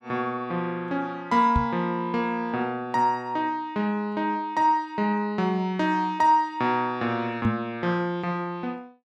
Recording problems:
knock on the microphone; at 1.5 s and at 7.5 s; peak +5 dB vs average level

